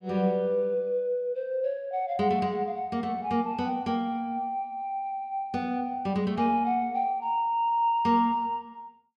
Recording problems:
none

